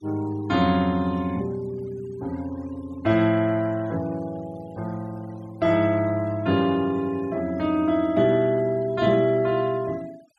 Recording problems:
denoising artefacts; signal-to-artefact ratio 24 dB

